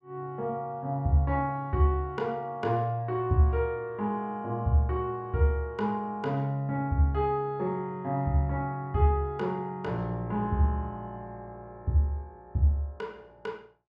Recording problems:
none

